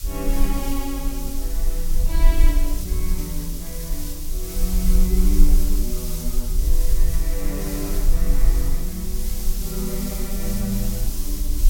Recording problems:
hiss; SNR 2 dB
low-frequency rumble; below 40 Hz, strongest tone 22 Hz, SNR -5 dB

